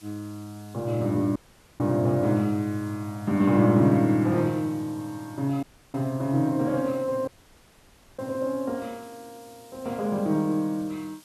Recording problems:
background hiss; slope 0 dB per octave, SNR 26 dB
audio cutting out; at 1.5 s, at 5.5 s and at 7.5 s for 1 s

